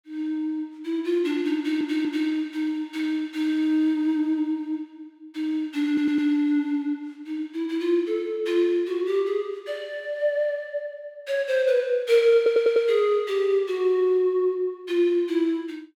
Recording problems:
stutter; at 1.5 s, at 6 s and at 12 s

